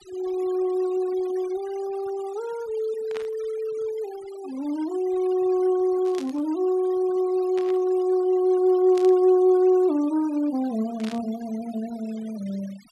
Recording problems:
noise reduction artefacts; signal-to-artefact ratio 22 dB
burst of static; 5 times, first at 3 s; peak -11 dB vs average level

